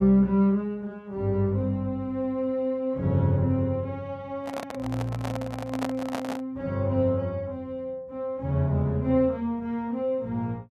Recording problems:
microphone handling noise; from 4.5 to 6.5 s; peak -1 dB vs average level

